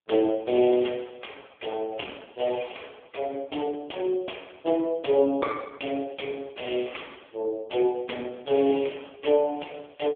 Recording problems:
phone line; 240 Hz to 3.2 kHz, AMR-NB

